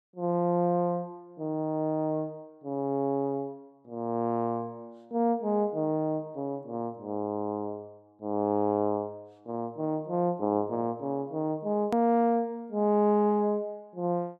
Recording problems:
click at an edit; at 12 s

